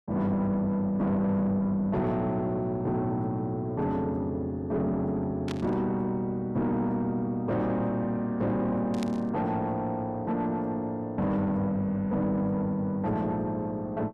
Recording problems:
distortion; soft clipping, signal-to-distortion ratio 9 dB
burst of static; at 5.5 s and at 9 s; peak -7 dB vs average level

